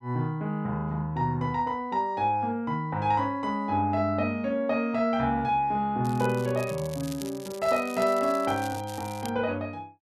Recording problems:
crackle; from 6 to 9.5 s; loose cable, SNR 17 dB

